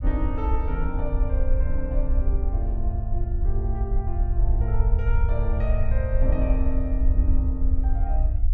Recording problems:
rumble; below 62 Hz, SNR -7 dB

